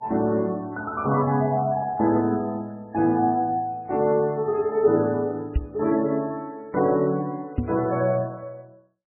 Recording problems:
codec artefacts; MP3, log-spectral distance 2 dB
microphone thump; at 5.5 s and at 7.5 s; peak +4 dB vs average level

